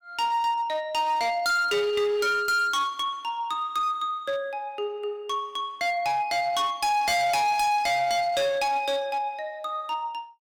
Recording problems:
distorted audio; hard clipping, uneven, signal-to-distortion ratio 8 dB

